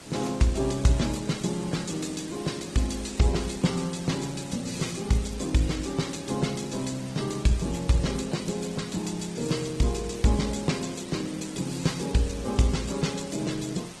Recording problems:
lossy compression; MP3, then Opus, log-spectral distance 9 dB, nothing above 18.9 kHz
hiss; slope -3 dB per octave, SNR 14 dB

